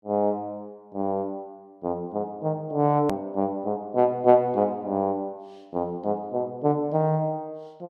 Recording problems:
click at an edit; at 3 s

